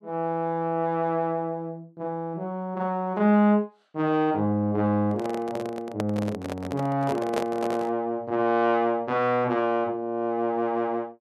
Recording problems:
handling noise; from 5 to 8 s; peak +2 dB vs average level

